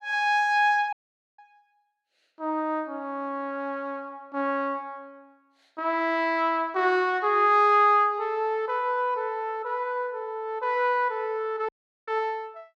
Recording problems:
dropout; at 1 s and at 12 s

